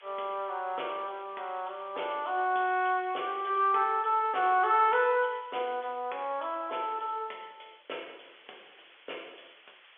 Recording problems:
phone line; 320 Hz to 3.5 kHz, G.711
background hiss; SNR 28 dB

